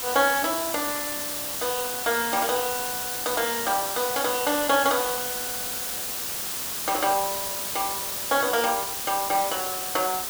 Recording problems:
hiss; slope 0 dB per octave, SNR 1 dB

